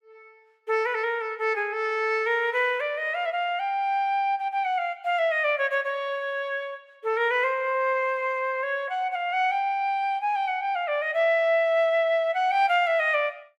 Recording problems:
none

